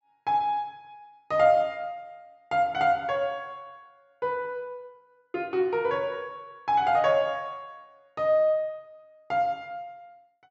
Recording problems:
treble cut off; nothing above 8 kHz

